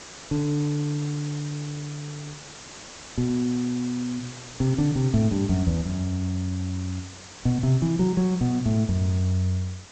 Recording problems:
treble missing; nothing above 8 kHz
hiss; slope -2 dB per octave, SNR 15 dB

